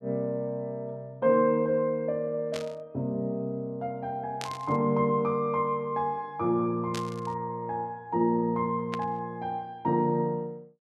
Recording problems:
static burst; 4 times, first at 2.5 s; peak -4 dB vs average level

